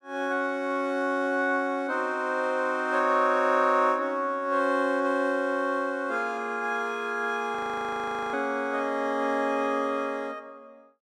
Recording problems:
frozen audio; at 7.5 s for 1 s

